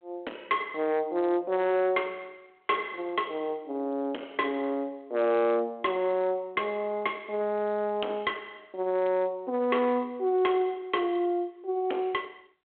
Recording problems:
phone line; 240 Hz to 3.3 kHz, G.726
distortion; soft clipping, signal-to-distortion ratio 10 dB

